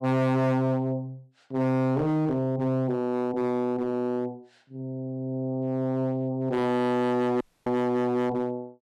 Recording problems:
distorted audio; hard clipping, signal-to-distortion ratio 8 dB
audio cutting out; at 7.5 s

